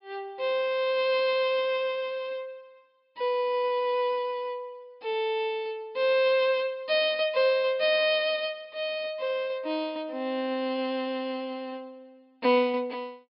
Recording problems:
treble missing; nothing above 5.5 kHz

